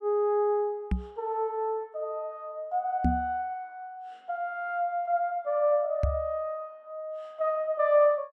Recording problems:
microphone bump; at 1 s, at 3 s and at 6 s; peak +6 dB vs average level

